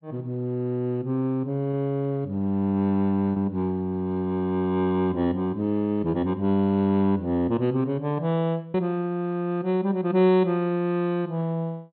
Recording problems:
low-pass filter; nothing above 4.3 kHz
lost packets; 1.6% of the sound replaced, filled with repeated pitch periods

